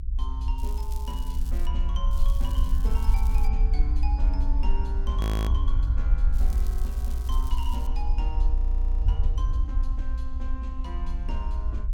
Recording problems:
rumble; below 58 Hz, SNR -13 dB
crackling; from 0.5 to 1.5 s, from 2 to 3.5 s and from 6.5 to 8 s; loose cable, SNR 10 dB
audio freezing; at 5 s and at 8.5 s

